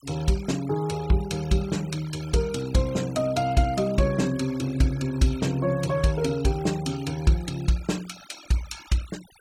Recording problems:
noise reduction artefacts; signal-to-artefact ratio 19 dB

